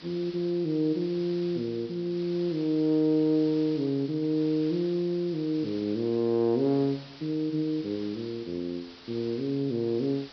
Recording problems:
treble cut off; nothing above 5.5 kHz
background hiss; SNR 19 dB

